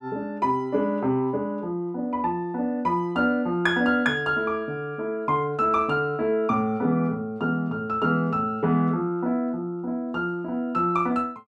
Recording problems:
none

